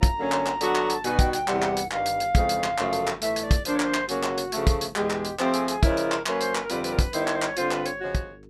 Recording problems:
hum; 50 Hz, harmonics up to 450 Hz, SNR 24 dB

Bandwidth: 15.5 kHz